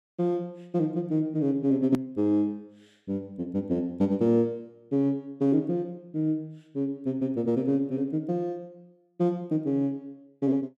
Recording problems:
click at an edit; at 2 s

